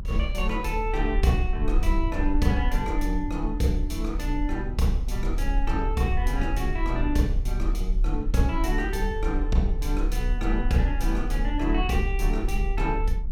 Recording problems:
rumble; below 40 Hz, strongest tone 36 Hz, SNR 1 dB

